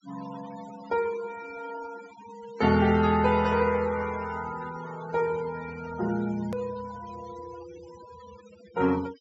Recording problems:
treble cut off; nothing above 8 kHz
denoising artefacts; signal-to-artefact ratio 18 dB
edit click; at 6.5 s

